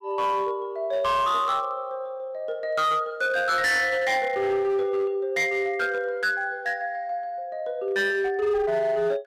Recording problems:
distorted audio; hard clipping, signal-to-distortion ratio 11 dB

